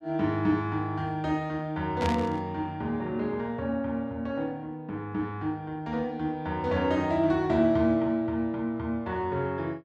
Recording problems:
static burst; at 2 s; peak -3 dB vs average level

